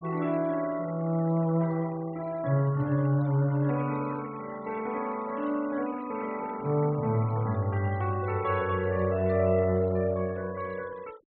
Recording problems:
low-pass filter; nothing above 4.2 kHz
denoising artefacts; signal-to-artefact ratio 22 dB

